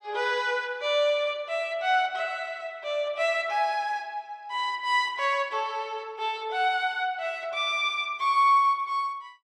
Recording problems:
none

